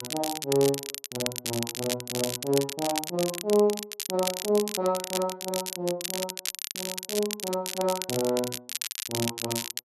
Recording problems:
crackling; vinyl, SNR 3 dB

